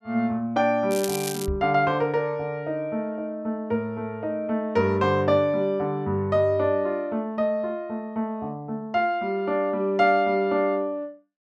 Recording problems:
crackling; at 1 s; loose cable, SNR 9 dB
microphone bump; at 1.5 s; peak -1 dB vs average level

